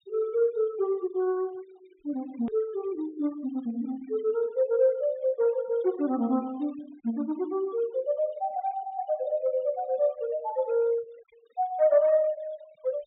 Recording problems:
treble missing; nothing above 4 kHz
noise reduction artefacts; signal-to-artefact ratio 24 dB
click at an edit; at 2.5 s

